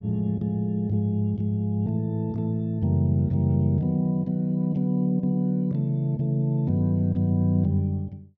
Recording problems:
none

